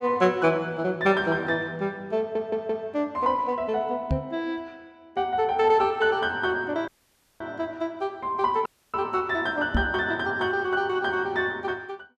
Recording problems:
audio stuttering; at 2 s
microphone bump; at 4 s and at 10 s; peak +4 dB vs average level
audio cutting out; at 7 s for 0.5 s and at 8.5 s

